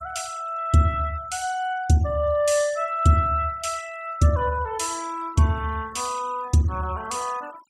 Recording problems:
noise reduction artefacts; signal-to-artefact ratio 22 dB

